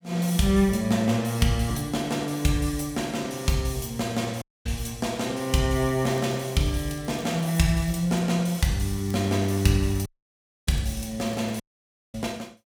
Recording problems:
audio cutting out; at 4.5 s, at 10 s for 0.5 s and at 12 s for 0.5 s
crackling; from 6 to 8 s and from 9 to 12 s; loose cable, SNR 25 dB

